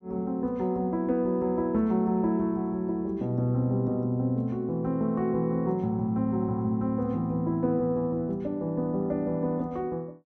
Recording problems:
none

